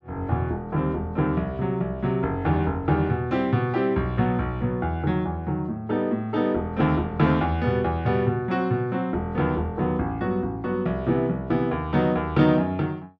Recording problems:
none

